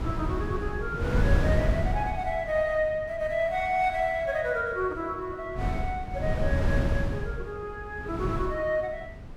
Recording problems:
wind on the microphone; below 170 Hz, SNR 1 dB

